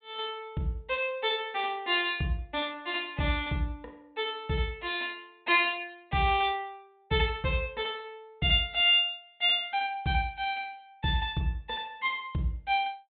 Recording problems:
treble cut off; nothing above 4 kHz

